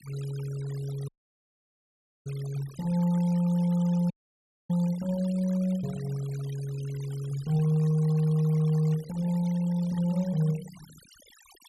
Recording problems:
noise reduction artefacts; signal-to-artefact ratio 21 dB
audio cutting out; at 1 s for 1 s and at 4 s for 0.5 s

